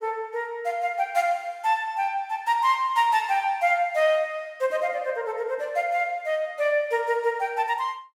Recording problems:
none

